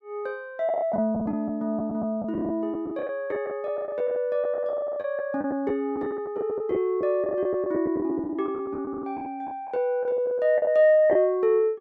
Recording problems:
lost packets; 12% of the sound replaced, filled with the last packet

